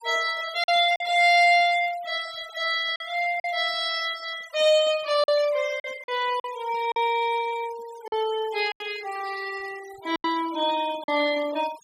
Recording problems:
noise reduction artefacts; signal-to-artefact ratio 18 dB
lost packets; 5% of the sound replaced, filled with silence

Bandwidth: 15.5 kHz